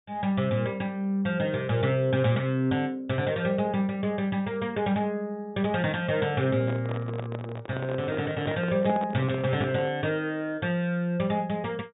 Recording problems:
low-pass filter; nothing above 4 kHz
microphone handling noise; from 6.5 to 10 s; peak -4 dB vs average level

